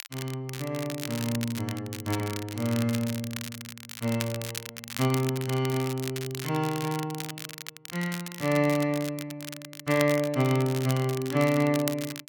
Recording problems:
crackling; vinyl, SNR 10 dB

